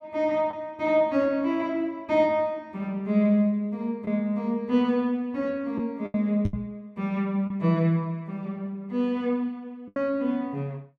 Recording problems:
lost packets; 3% of the sound replaced, filled with the last packet
knock on the microphone; at 6.5 s; peak +3 dB vs average level

